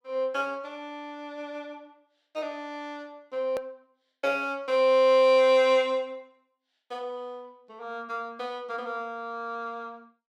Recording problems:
click at an edit; at 3.5 s

